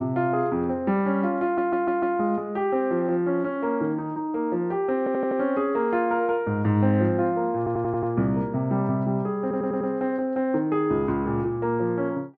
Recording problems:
audio stuttering; 4 times, first at 1.5 s

